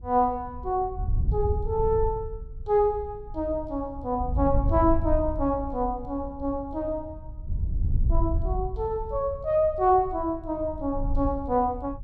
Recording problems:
wind on the microphone; below 84 Hz, SNR 6 dB

